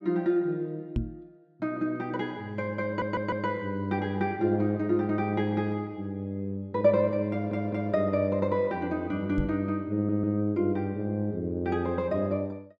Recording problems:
microphone thump; at 1 s and at 9.5 s; peak +3 dB vs average level
stutter; at 3 s, at 7.5 s and at 10 s

